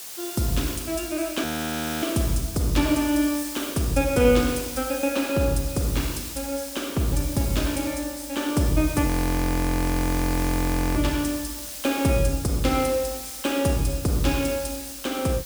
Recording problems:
hiss; slope +1 dB per octave, SNR 10 dB
frozen audio; at 1.5 s for 0.5 s and at 9 s for 2 s

